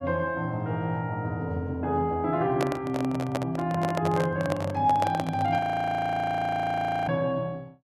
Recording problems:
handling noise; from 2.5 to 5.5 s; peak +3 dB vs average level
frozen audio; at 5.5 s for 1.5 s

